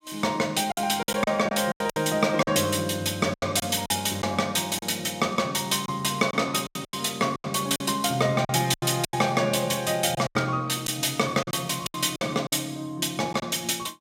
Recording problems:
packet loss; 10% of the sound replaced, filled with silence

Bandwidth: 16 kHz